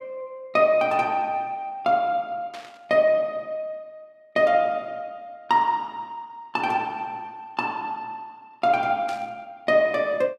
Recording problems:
static burst; at 2.5 s and at 9 s; peak -11 dB vs average level

